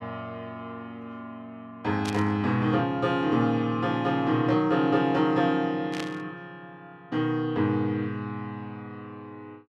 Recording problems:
burst of static; at 2 s and at 6 s; peak -5 dB vs average level

